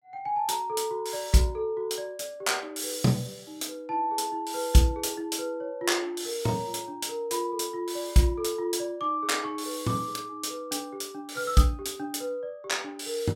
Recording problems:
none

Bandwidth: 16.5 kHz